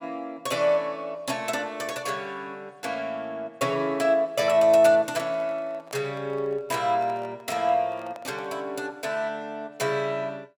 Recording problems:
microphone handling noise; from 5 to 8.5 s; peak -11 dB vs average level

